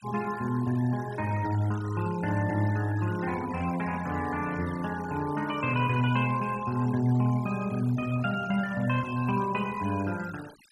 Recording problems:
noise reduction artefacts; signal-to-artefact ratio 16 dB

